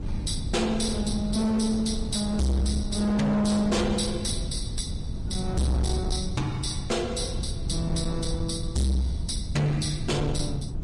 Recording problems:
lossy codec; Vorbis, log-spectral distance 3 dB, nothing above 10.1 kHz
distorted audio; hard clipping, signal-to-distortion ratio 6 dB
rumble; below 150 Hz, SNR 6 dB
wind noise; below 560 Hz, SNR 22 dB

